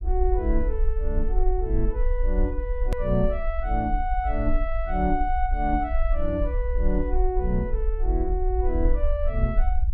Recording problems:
rumble; below 50 Hz, strongest tone 22 Hz, SNR 0 dB
edit click; at 3 s

